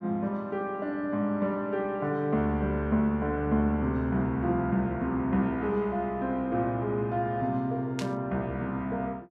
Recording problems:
burst of static; at 8 s; peak -4 dB vs average level

